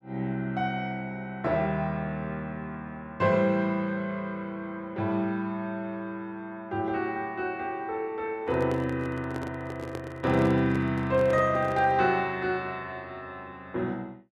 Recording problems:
handling noise; from 8.5 to 12 s; peak -4 dB vs average level

